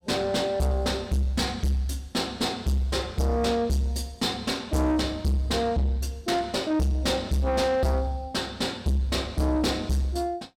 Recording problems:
distortion; soft clipping, signal-to-distortion ratio 8 dB

